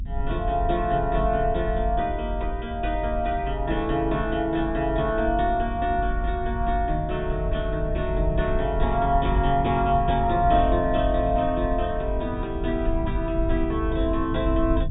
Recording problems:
treble cut off; nothing above 4 kHz
rumble; below 72 Hz, SNR 5 dB

